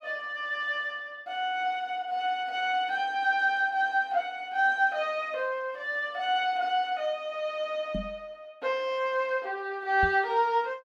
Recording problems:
microphone thump; at 8 s and at 10 s; peak -2 dB vs average level

